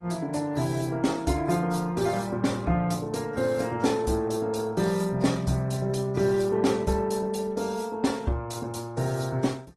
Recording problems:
lossy compression; AAC, then Opus, log-spectral distance 4 dB, nothing above 15.5 kHz

